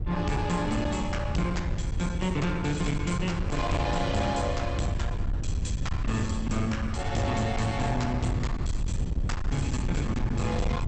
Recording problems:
lossy compression; MP2, log-spectral distance 3 dB, nothing above 8.5 kHz
distortion; hard clipping, uneven, signal-to-distortion ratio 7 dB
low-frequency rumble; below 120 Hz, SNR 3 dB

